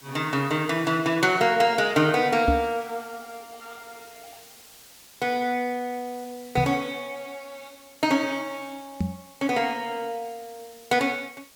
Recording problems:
hiss; slope 0 dB per octave, SNR 23 dB
knock on the microphone; at 2.5 s, at 6.5 s and at 9 s; peak +4 dB vs average level

